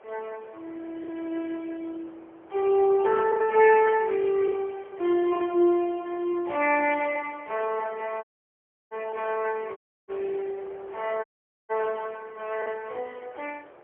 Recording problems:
phone line; 320 Hz to 3.1 kHz, AMR-NB, then MP3
wind on the microphone; below 960 Hz, SNR 25 dB
packet loss; 2% of the sound replaced, filled with the last packet
audio cutting out; at 8 s for 0.5 s, at 10 s and at 11 s

